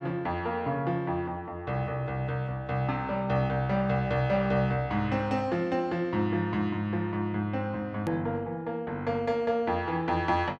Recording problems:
hard cut with a click; at 8 s

